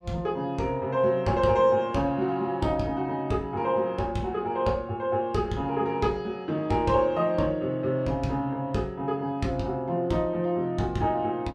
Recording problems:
none

